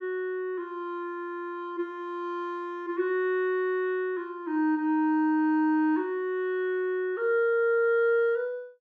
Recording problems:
none

